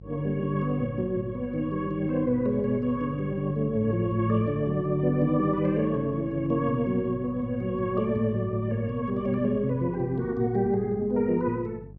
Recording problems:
hum; 50 Hz, harmonics up to 550 Hz, SNR 18 dB

